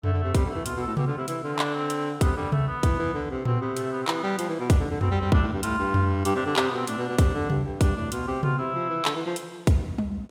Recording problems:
none

